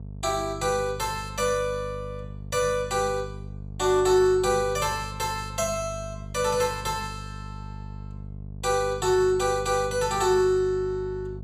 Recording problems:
hum; 50 Hz, harmonics up to 500 Hz, SNR 13 dB

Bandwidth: 15 kHz